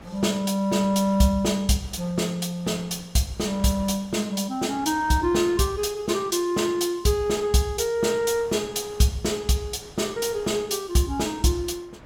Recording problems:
wind noise; below 1.1 kHz, SNR 24 dB

